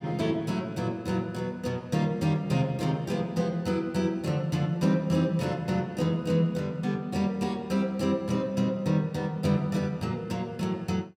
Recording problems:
none

